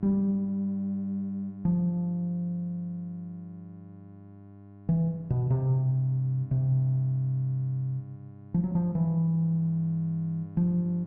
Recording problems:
electrical hum; 50 Hz, harmonics up to 1.1 kHz, SNR 19 dB

